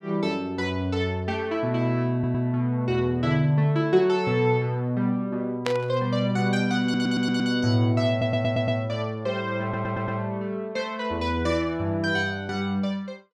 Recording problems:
audio stuttering; 4 times, first at 2 s
static burst; at 5.5 s; peak 0 dB vs average level

